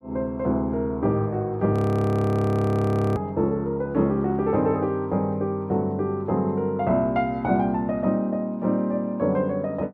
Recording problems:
audio freezing; at 1.5 s for 1.5 s

